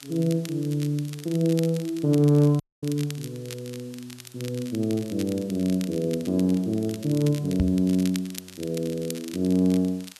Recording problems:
background hiss; slope +1 dB per octave, SNR 27 dB
crackle; vinyl, SNR 17 dB
audio cutting out; at 2.5 s
microphone bump; at 7.5 s; peak +2 dB vs average level

